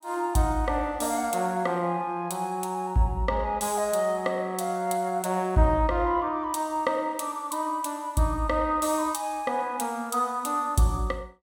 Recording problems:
none

